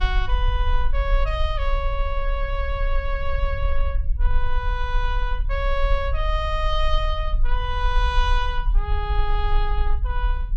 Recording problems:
rumble; below 42 Hz, SNR -2 dB

